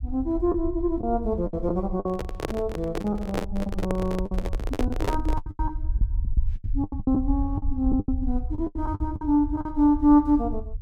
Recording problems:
low-frequency rumble; below 68 Hz, SNR 7 dB
packet loss; 12% of the sound replaced, filled with the last packet
microphone handling noise; from 2 to 5.5 s; peak +2 dB vs average level

